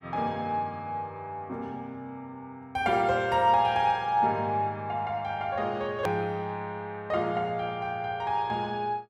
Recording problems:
hard cut with a click; at 6 s

